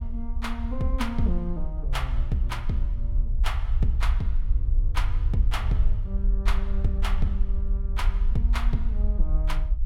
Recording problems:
rumble; below 50 Hz, SNR -4 dB

